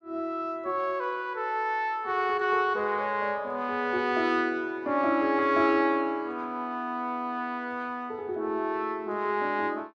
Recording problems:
none

